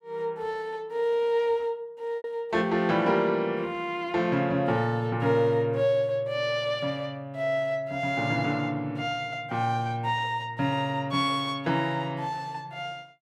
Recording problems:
lost packets; 0.6% of the sound replaced, filled with repeated pitch periods

